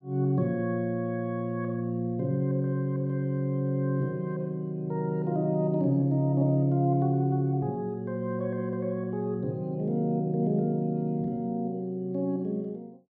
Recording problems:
none

